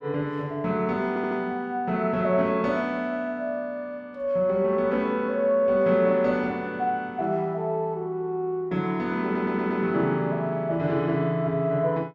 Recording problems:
stutter; at 1 s and at 9 s

